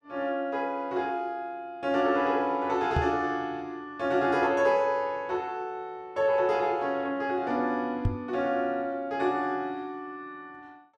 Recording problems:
microphone bump; at 3 s and at 8 s; peak +5 dB vs average level

